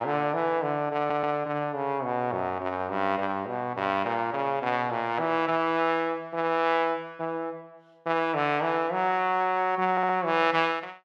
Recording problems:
stutter; at 1 s and at 10 s

